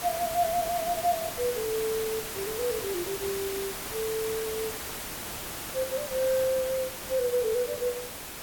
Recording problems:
background hiss; slope -2 dB per octave, SNR 5 dB

